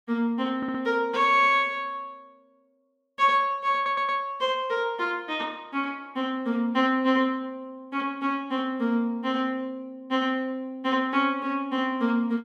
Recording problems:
audio stuttering; at 0.5 s and at 4 s

